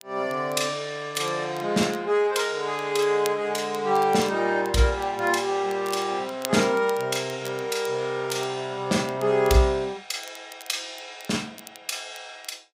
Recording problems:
crackle; vinyl, SNR 19 dB

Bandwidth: 15.5 kHz